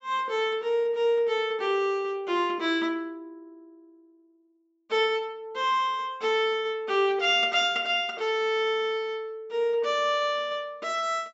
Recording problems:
treble cut off; nothing above 8 kHz

